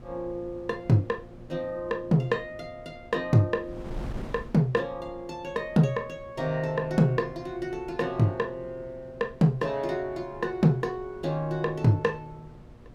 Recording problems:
mains hum; 60 Hz, harmonics up to 1.2 kHz, SNR 26 dB
wind on the microphone; below 290 Hz, SNR 20 dB

